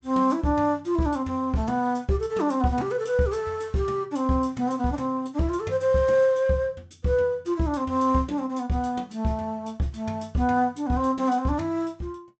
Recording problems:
treble cut off; nothing above 8 kHz

